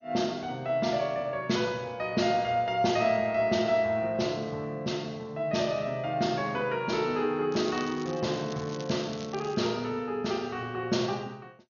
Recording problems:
lossy compression; MP2, log-spectral distance 3 dB, nothing above 6.7 kHz
crackle; from 7.5 to 9.5 s; loose cable, SNR 17 dB

